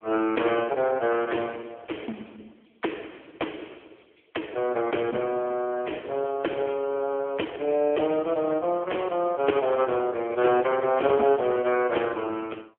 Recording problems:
phone line; 240 Hz to 3.3 kHz, AMR-NB

